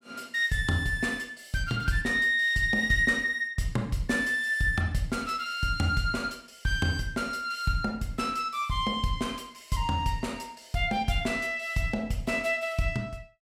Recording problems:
none

